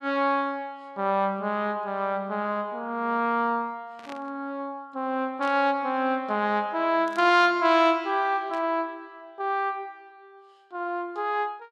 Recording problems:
static burst; 4 times, first at 4 s; peak -13 dB vs average level

